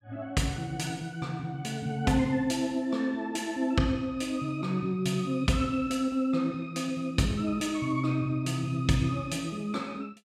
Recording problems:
none

